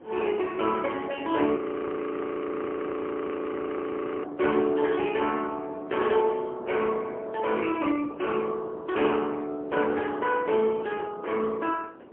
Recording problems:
telephone audio; 300 Hz to 3.3 kHz, AMR-NB, then MP3
wind on the microphone; below 600 Hz, SNR 18 dB
audio freezing; at 1.5 s for 2.5 s

